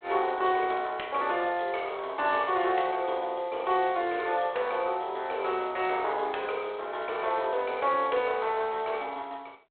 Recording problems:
phone line; 320 Hz to 3.3 kHz, G.726

